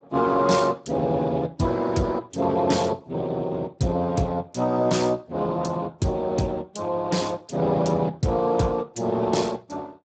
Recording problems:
lossy codec; Speex, log-spectral distance 4 dB, nothing above 7.8 kHz

